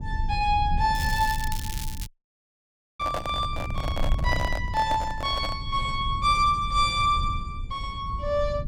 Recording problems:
low-frequency rumble; below 88 Hz, SNR 7 dB
crackling; from 1 to 2 s; loose cable, SNR 11 dB
dropout; at 2 s for 1 s
handling noise; from 3 to 5.5 s; peak -1 dB vs average level

